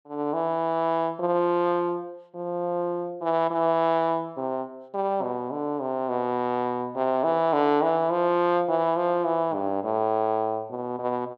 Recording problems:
none

